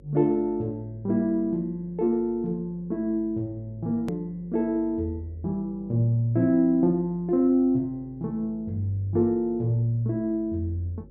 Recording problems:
hum; 50 Hz, harmonics up to 550 Hz, SNR 25 dB
edit click; at 4 s

